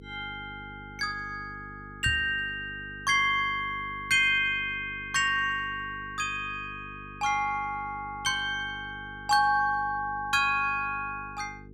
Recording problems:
hum; 50 Hz, harmonics up to 450 Hz, SNR 19 dB
knock on the microphone; at 2 s; peak -1 dB vs average level

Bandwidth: 16 kHz